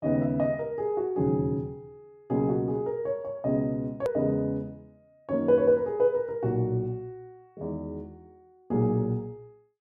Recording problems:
click at an edit; at 4 s

